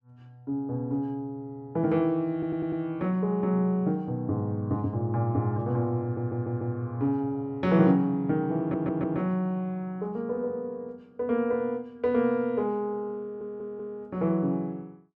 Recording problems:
audio stuttering; 4 times, first at 2.5 s

